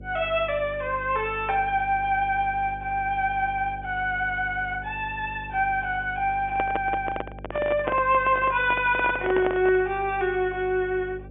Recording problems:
treble cut off; nothing above 3.4 kHz
electrical hum; 50 Hz, harmonics up to 600 Hz, SNR 17 dB
handling noise; from 6.5 to 10 s; peak +1 dB vs average level

